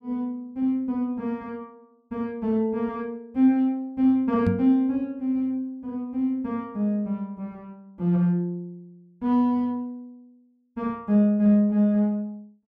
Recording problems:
microphone bump; at 4.5 s; peak +4 dB vs average level

